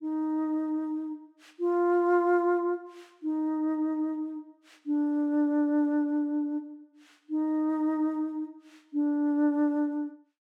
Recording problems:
none

